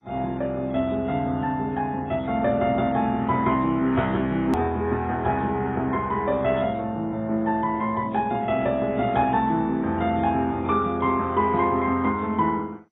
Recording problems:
lossy codec; AAC, then MP2, log-spectral distance 2 dB, nothing above 13.1 kHz
edit click; at 4.5 s

